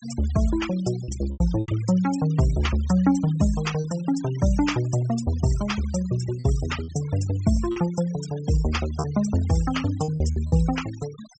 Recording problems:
treble cut off; nothing above 8 kHz
noise reduction artefacts; signal-to-artefact ratio 17 dB
packet loss; 5% of the sound replaced, filled with repeated pitch periods

